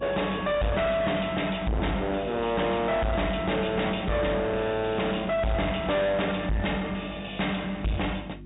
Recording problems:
treble cut off; nothing above 4 kHz
distortion; soft clipping, signal-to-distortion ratio 5 dB
mains hum; 50 Hz, harmonics up to 350 Hz, SNR 17 dB
background hiss; SNR 40 dB

